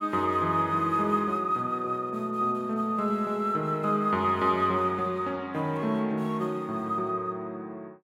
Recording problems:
none

